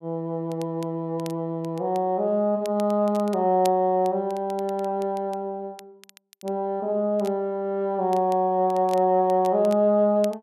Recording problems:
crackle; vinyl, SNR 25 dB

